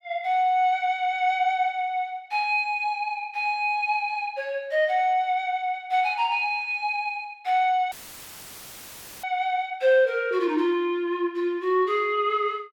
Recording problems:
audio cutting out; at 8 s for 1.5 s; filled with static

